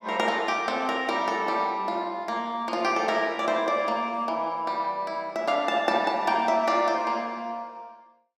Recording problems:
none

